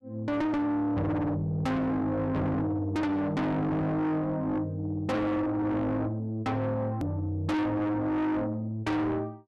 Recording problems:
distortion; soft clipping, signal-to-distortion ratio 6 dB
edit click; at 7 s

